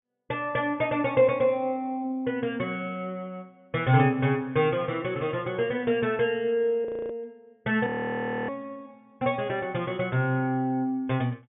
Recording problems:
treble missing; nothing above 3.6 kHz
frozen audio; at 7 s and at 8 s for 0.5 s

